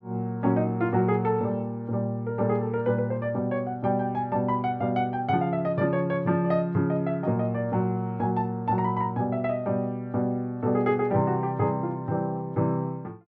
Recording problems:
none

